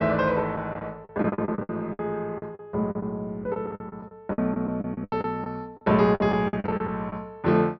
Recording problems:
treble cut off; nothing above 5.9 kHz
packet loss; 16% of the sound replaced, filled with the last packet

